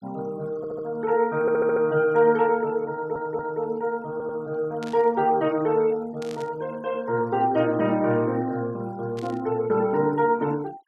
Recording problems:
noise reduction artefacts; signal-to-artefact ratio 24 dB
stutter; 4 times, first at 0.5 s
burst of static; at 5 s, at 6 s and at 9 s; peak -13 dB vs average level

